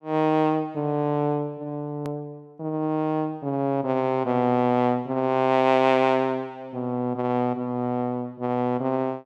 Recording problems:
click at an edit; at 2 s

